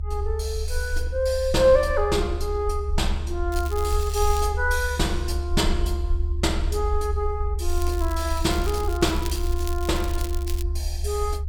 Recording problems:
low-frequency rumble; below 72 Hz, SNR 3 dB
crackle; at 3.5 s and from 7.5 to 11 s; loose cable, SNR 14 dB

